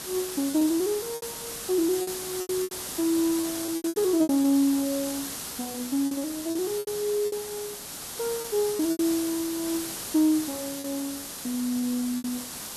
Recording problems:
hiss; SNR 7 dB
packet loss; 10% of the sound replaced, filled with repeated pitch periods

